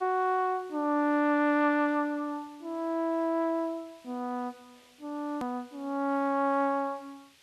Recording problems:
background hiss; SNR 29 dB
edit click; at 5.5 s

